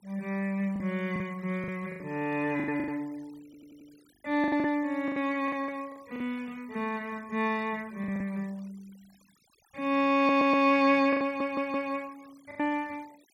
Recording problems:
denoising artefacts; signal-to-artefact ratio 27 dB
packet loss; 9% of the sound replaced, filled with the last packet
audio stuttering; at 3.5 s, at 10 s and at 11 s

